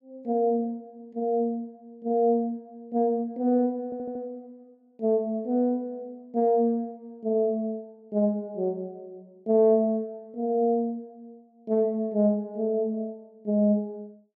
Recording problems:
audio stuttering; at 4 s

